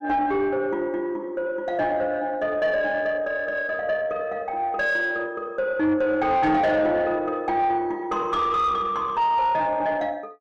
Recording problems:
distortion; soft clipping, signal-to-distortion ratio 10 dB

